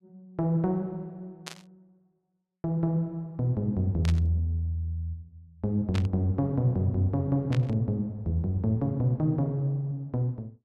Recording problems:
static burst; 4 times, first at 1.5 s; peak -5 dB vs average level

